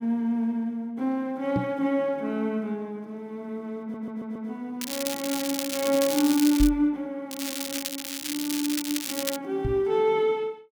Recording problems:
microphone thump; at 1.5 s, at 6.5 s and at 9.5 s; peak +4 dB vs average level
audio stuttering; at 4 s
crackle; from 5 to 6.5 s and from 7.5 to 9.5 s; loose cable, SNR 4 dB

